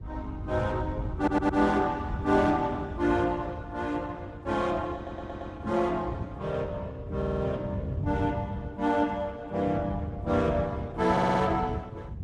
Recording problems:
lossy codec; Opus, log-spectral distance 2 dB
wind noise; below 120 Hz, SNR 6 dB
audio stuttering; 4 times, first at 1 s

